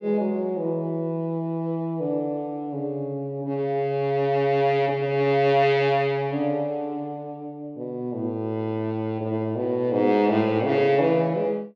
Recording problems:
none

